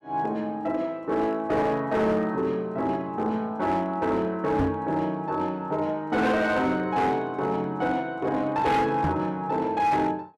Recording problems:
distortion; hard clipping, signal-to-distortion ratio 12 dB
microphone bump; at 4.5 s and at 9 s; peak +4 dB vs average level

